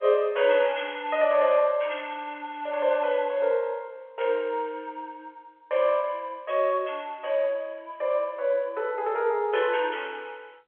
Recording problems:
telephone audio; 370 Hz to 3.4 kHz, G.711

